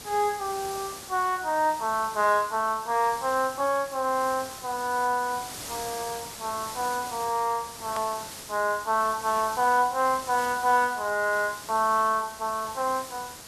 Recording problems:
hiss; slope -1 dB per octave, SNR 12 dB
edit click; at 8 s

